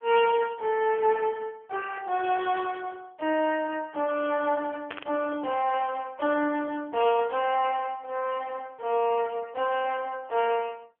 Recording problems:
phone line; 260 Hz to 3.3 kHz, AMR-NB
burst of static; at 5 s; peak -8 dB vs average level

